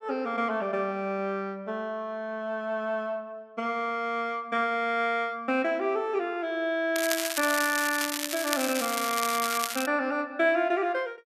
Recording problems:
crackling; from 7 to 10 s; loose cable, SNR 3 dB

